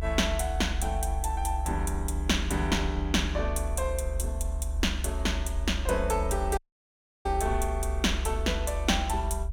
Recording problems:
low-frequency rumble; below 70 Hz, strongest tone 68 Hz, SNR 2 dB
dropout; at 6.5 s for 0.5 s

